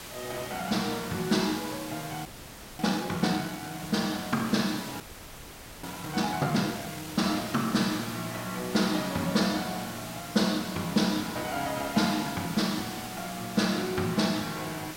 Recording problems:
background hiss; slope -2 dB per octave, SNR 10 dB
frozen audio; at 2.5 s for 0.5 s and at 5 s for 1 s

